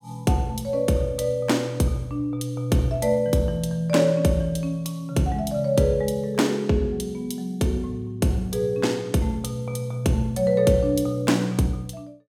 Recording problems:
none

